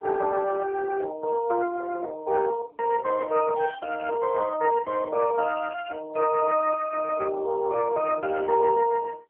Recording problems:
telephone audio; 320 Hz to 2.1 kHz, AMR-NB

